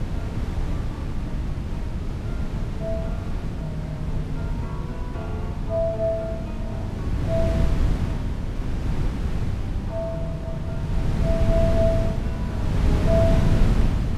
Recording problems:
wind noise; below 170 Hz, SNR -4 dB

